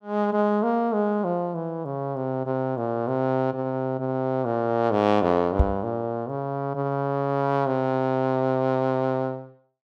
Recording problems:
microphone thump; at 5.5 s; peak +8 dB vs average level

